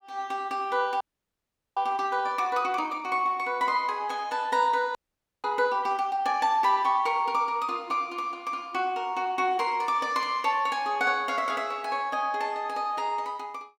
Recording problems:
audio freezing; at 1 s for 1 s and at 5 s

